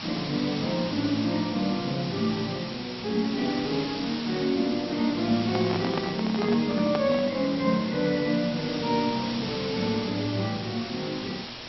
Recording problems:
treble missing; nothing above 5.6 kHz
hum; 60 Hz, harmonics up to 960 Hz, SNR 24 dB
background hiss; slope -1 dB per octave, SNR 8 dB
microphone handling noise; from 5.5 to 7.5 s; peak +1 dB vs average level

